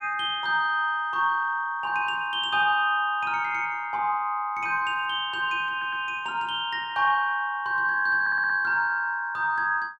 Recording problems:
audio stuttering; at 5.5 s and at 8 s

